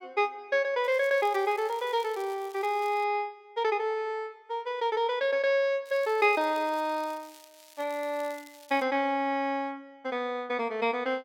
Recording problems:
crackle; from 1 to 3 s and from 6 to 9 s; loose cable, SNR 24 dB

